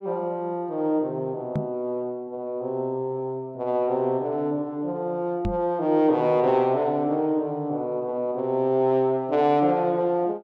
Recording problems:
knock on the microphone; at 1.5 s and at 5.5 s; peak +2 dB vs average level

